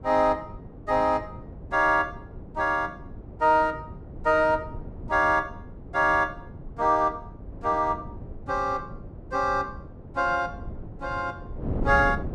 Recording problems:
wind on the microphone; below 260 Hz, SNR 14 dB

